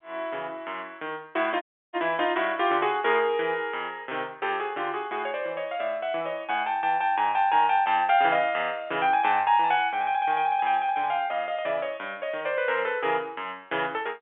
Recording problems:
phone line; 280 Hz to 3.5 kHz, G.711
dropout; at 1.5 s

